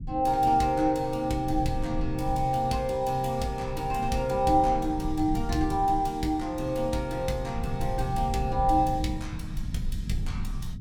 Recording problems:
rumble; below 120 Hz, SNR 9 dB

